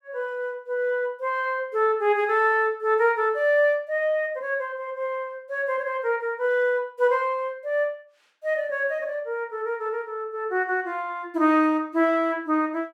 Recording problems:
none

